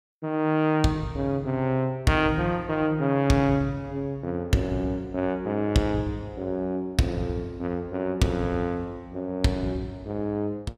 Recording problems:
none

